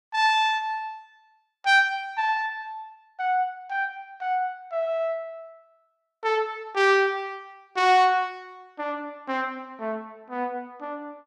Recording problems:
none

